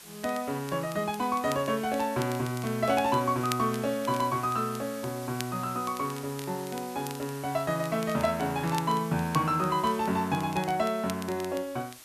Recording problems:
background hiss; slope 0 dB per octave, SNR 16 dB
crackling; vinyl, SNR 17 dB

